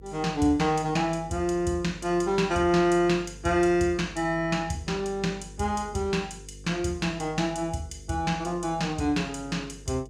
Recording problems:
mains hum; 50 Hz, harmonics up to 500 Hz, SNR 20 dB

